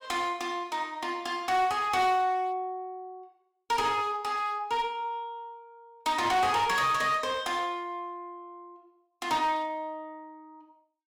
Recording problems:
distorted audio; hard clipping, uneven, signal-to-distortion ratio 10 dB

